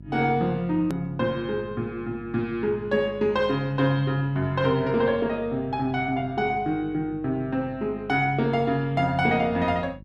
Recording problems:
hum; 50 Hz, harmonics up to 400 Hz, SNR 19 dB
click at an edit; at 1 s

